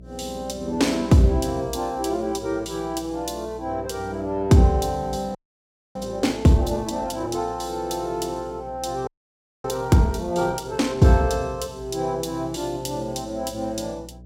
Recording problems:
hum; 60 Hz, harmonics up to 660 Hz, SNR 21 dB
audio freezing; at 5.5 s for 0.5 s and at 9 s for 0.5 s

